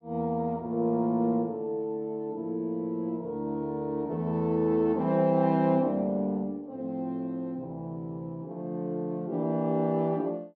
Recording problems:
none

